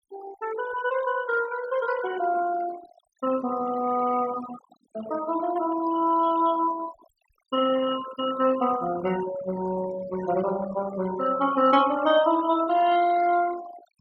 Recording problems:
noise reduction artefacts; signal-to-artefact ratio 15 dB

